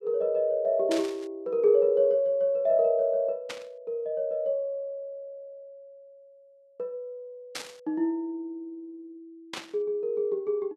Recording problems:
static burst; 4 times, first at 1 s; peak -3 dB vs average level

